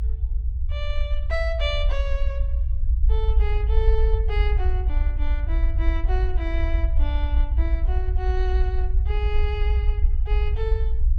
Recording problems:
rumble; below 58 Hz, SNR -8 dB

